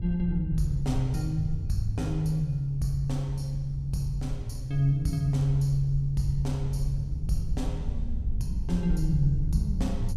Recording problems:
hum; 60 Hz, harmonics up to 540 Hz, SNR 29 dB
wind on the microphone; below 78 Hz, SNR 6 dB

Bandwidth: 15.5 kHz